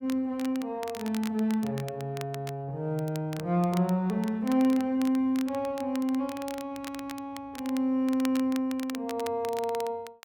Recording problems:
crackling; vinyl, SNR 16 dB

